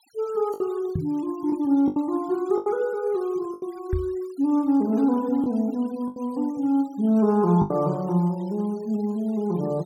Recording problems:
noise reduction artefacts; signal-to-artefact ratio 27 dB
lost packets; 5% of the sound replaced, filled with the last packet
microphone thump; at 1 s and at 4 s; peak +1 dB vs average level

